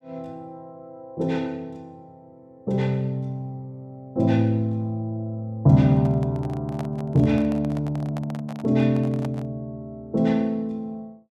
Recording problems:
microphone handling noise; from 6 to 9.5 s; peak -8 dB vs average level

